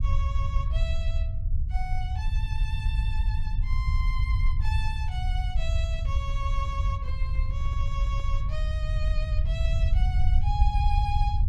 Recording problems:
rumble; below 74 Hz, SNR -10 dB
handling noise; from 6 to 8.5 s; peak -11 dB vs average level

